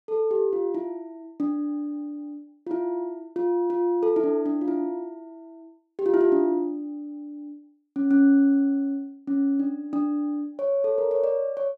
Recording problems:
none

